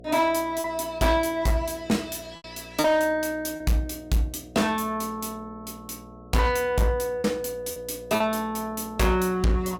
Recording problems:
distorted audio; hard clipping, uneven, signal-to-distortion ratio 11 dB
hum; 60 Hz, harmonics up to 720 Hz, SNR 21 dB
lost packets; 3% of the sound replaced, filled with repeated pitch periods

